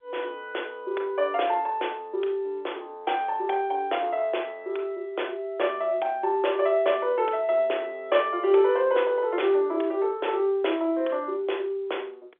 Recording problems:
phone line; 300 Hz to 3.5 kHz, G.711

